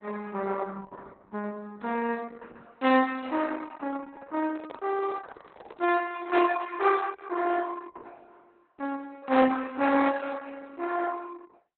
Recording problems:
lossy compression; Opus, log-spectral distance 4 dB, nothing above 3.9 kHz
microphone handling noise; from 4.5 to 6 s; peak -9 dB vs average level

